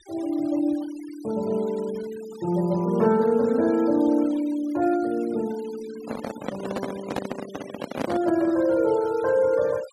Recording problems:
noise reduction artefacts; signal-to-artefact ratio 20 dB
handling noise; from 6 to 8.5 s; peak 0 dB vs average level

